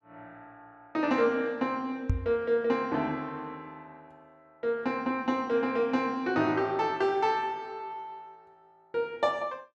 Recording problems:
microphone thump; at 2 s; peak +5 dB vs average level

